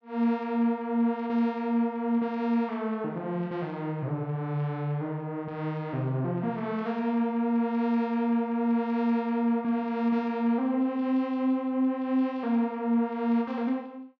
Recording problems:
none

